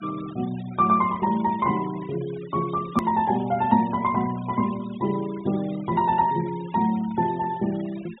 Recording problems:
low-pass filter; nothing above 4 kHz
denoising artefacts; signal-to-artefact ratio 21 dB
edit click; at 3 s

